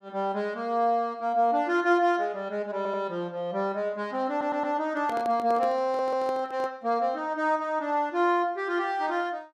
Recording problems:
stutter; at 3 s, at 4.5 s and at 6 s
handling noise; from 5 to 6.5 s; peak -7 dB vs average level

